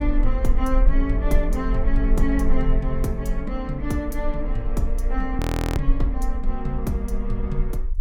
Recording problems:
low-frequency rumble; below 42 Hz, strongest tone 20 Hz, SNR -1 dB
frozen audio; at 5.5 s

